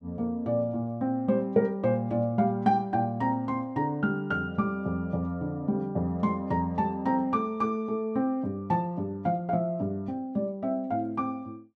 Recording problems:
none

